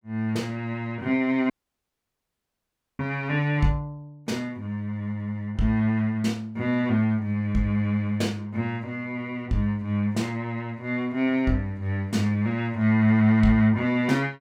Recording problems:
dropout; at 1.5 s for 1.5 s

